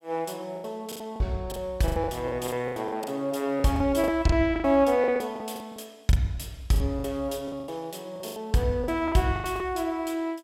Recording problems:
lost packets; 16% of the sound replaced, filled with the last packet

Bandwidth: 16.5 kHz